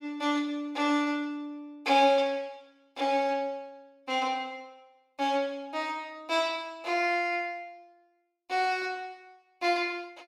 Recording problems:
none

